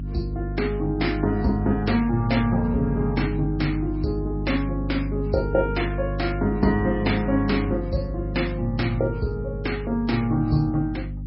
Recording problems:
lossy compression; MP3, log-spectral distance 2 dB, nothing above 5.5 kHz
electrical hum; 50 Hz, harmonics up to 300 Hz, SNR 6 dB

